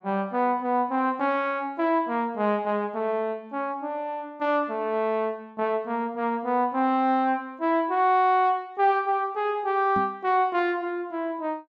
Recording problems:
knock on the microphone; at 10 s; peak -3 dB vs average level

